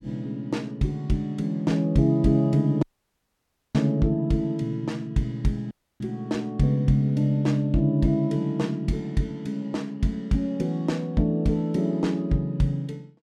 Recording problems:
audio cutting out; at 3 s for 1 s and at 5.5 s

